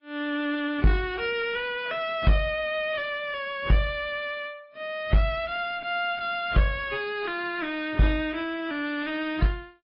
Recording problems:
treble cut off; nothing above 5 kHz
codec artefacts; AAC, then AAC, log-spectral distance 2 dB
distorted audio; soft clipping, signal-to-distortion ratio 9 dB

